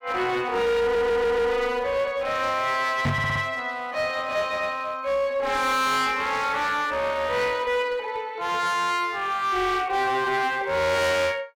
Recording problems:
distorted audio; hard clipping, uneven, signal-to-distortion ratio 6 dB
stutter; at 1 s and at 3 s
microphone bump; at 3 s; peak +3 dB vs average level

